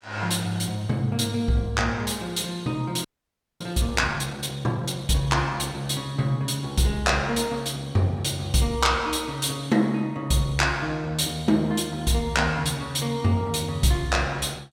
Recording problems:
frozen audio; at 3 s for 0.5 s

